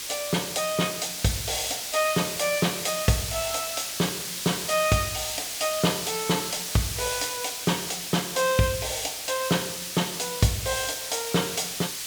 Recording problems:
background hiss; slope +3 dB per octave, SNR 4 dB

